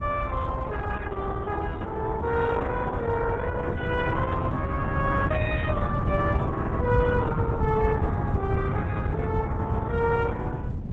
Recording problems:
lossy codec; AAC, then Opus, log-spectral distance 2 dB
low-frequency rumble; below 120 Hz, SNR -2 dB

